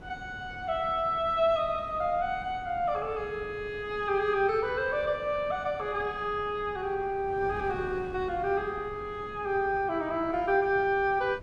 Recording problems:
wind on the microphone; below 380 Hz, SNR 18 dB

